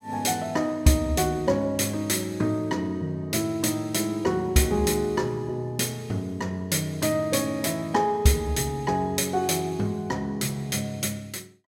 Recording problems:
none

